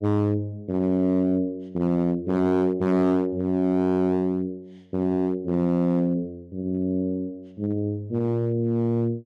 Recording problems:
distorted audio; hard clipping, uneven, signal-to-distortion ratio 10 dB

